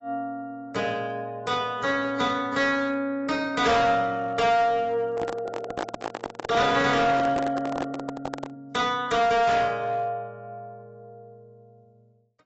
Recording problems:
lossy compression; AAC, log-spectral distance 2 dB, nothing above 7.6 kHz
distortion; hard clipping, uneven, signal-to-distortion ratio 10 dB
microphone handling noise; from 5 to 8.5 s; peak -3 dB vs average level

